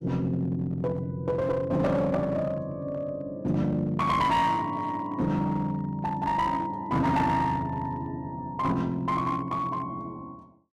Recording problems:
distorted audio; hard clipping, uneven, signal-to-distortion ratio 10 dB

